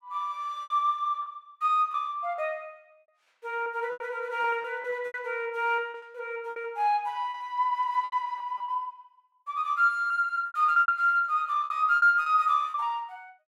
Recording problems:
lost packets; 11% of the sound replaced, filled with repeated pitch periods

